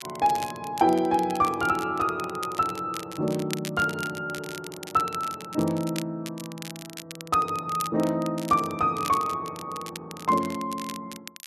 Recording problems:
crackle; vinyl, SNR 14 dB

